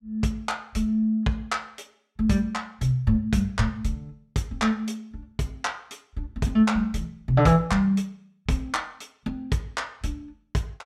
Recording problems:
none

